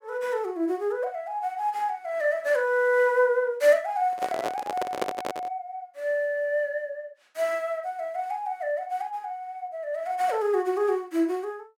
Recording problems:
microphone handling noise; from 4 to 5.5 s; peak +3 dB vs average level

